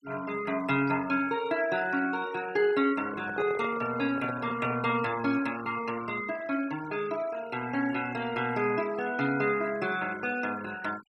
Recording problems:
noise reduction artefacts; signal-to-artefact ratio 17 dB
handling noise; from 3 to 5 s; peak -4 dB vs average level

